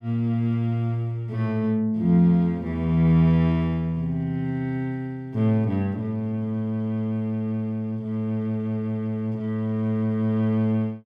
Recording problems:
none

